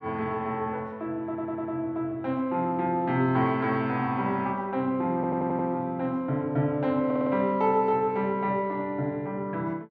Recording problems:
audio stuttering; at 1.5 s, at 5 s and at 7 s

